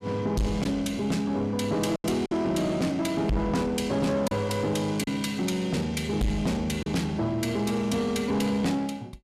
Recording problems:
distorted audio; soft clipping, signal-to-distortion ratio 8 dB
lost packets; 3% of the sound replaced, filled with silence

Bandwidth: 14.5 kHz